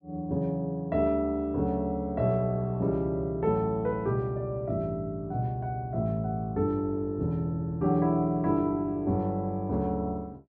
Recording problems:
none

